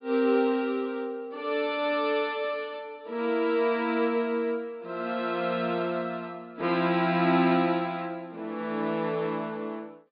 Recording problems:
treble missing; nothing above 5.1 kHz

